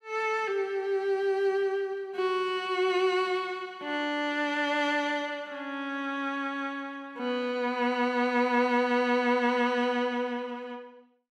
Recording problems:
none

